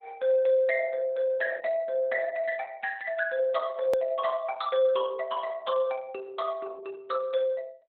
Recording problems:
lossy compression; Opus, log-spectral distance 3 dB, nothing above 17.7 kHz
hard cut with a click; at 4 s

